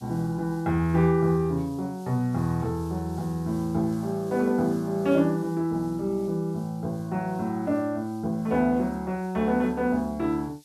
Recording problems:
hiss; SNR 27 dB

